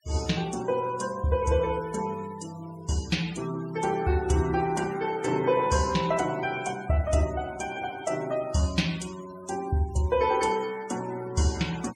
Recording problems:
noise reduction artefacts; signal-to-artefact ratio 18 dB

